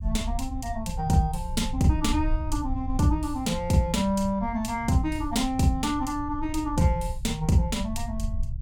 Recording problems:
low-frequency rumble; below 80 Hz, SNR 8 dB

